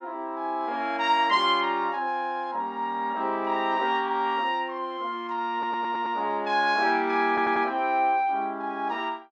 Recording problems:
stutter; at 5.5 s and at 7.5 s

